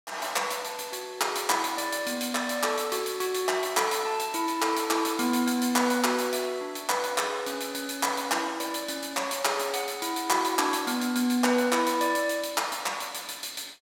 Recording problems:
crackle; from 2.5 to 6.5 s; loose cable, SNR 30 dB

